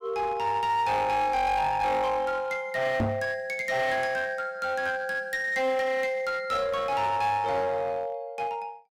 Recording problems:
distortion; hard clipping, uneven, signal-to-distortion ratio 10 dB
knock on the microphone; at 3 s; peak +3 dB vs average level

